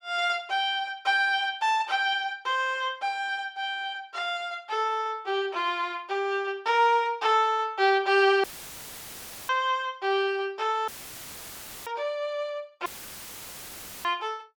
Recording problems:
dropout; at 8.5 s for 1 s, at 11 s for 1 s and at 13 s for 1 s; filled with static

